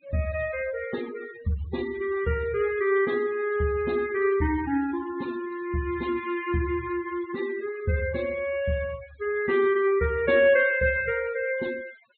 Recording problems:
treble cut off; nothing above 4 kHz
noise reduction artefacts; signal-to-artefact ratio 18 dB

